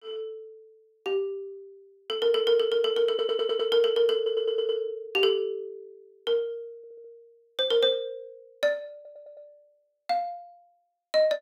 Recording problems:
audio stuttering; 4 times, first at 3 s

